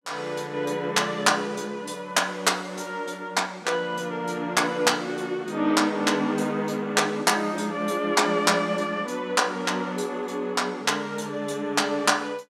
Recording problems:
none

